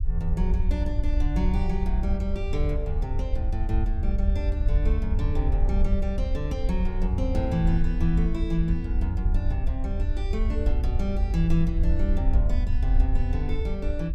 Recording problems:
low-frequency rumble; below 66 Hz, SNR -4 dB

